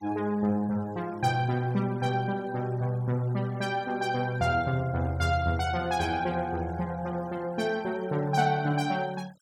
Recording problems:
noise reduction artefacts; signal-to-artefact ratio 26 dB

